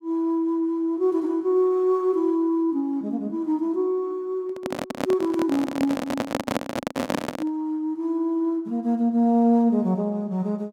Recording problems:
microphone handling noise; from 4.5 to 7.5 s; peak +2 dB vs average level

